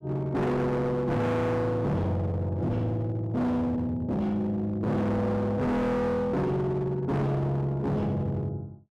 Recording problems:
distortion; hard clipping, signal-to-distortion ratio 6 dB

